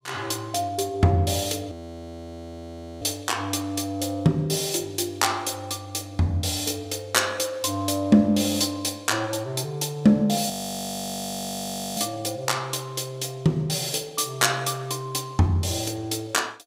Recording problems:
frozen audio; at 1.5 s for 1.5 s and at 11 s for 1.5 s

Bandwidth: 15.5 kHz